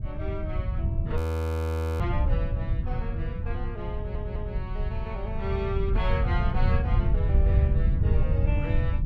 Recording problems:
wind on the microphone; below 100 Hz, SNR -7 dB
audio freezing; at 1 s for 1 s
audio stuttering; at 4 s

